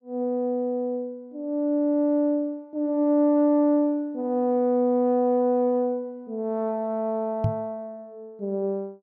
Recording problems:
microphone bump; at 7.5 s; peak +3 dB vs average level

